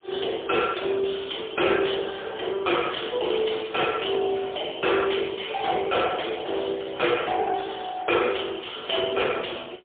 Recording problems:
phone line; 320 Hz to 3.5 kHz, AMR-NB, then MP3
distorted audio; hard clipping, uneven, signal-to-distortion ratio 12 dB

